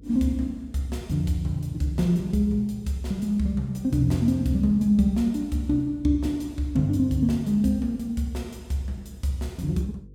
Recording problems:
hum; 50 Hz, harmonics up to 500 Hz, SNR 24 dB

